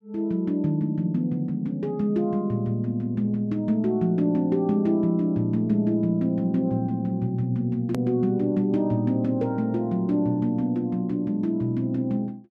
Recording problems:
edit click; at 8 s

